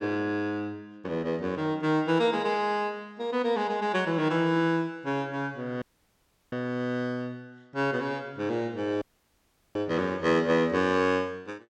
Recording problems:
dropout; at 6 s for 0.5 s and at 9 s for 0.5 s

